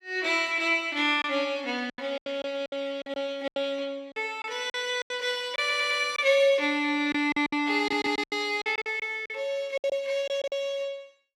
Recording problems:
packet loss; 11% of the sound replaced, filled with silence
audio stuttering; at 5.5 s and at 8 s

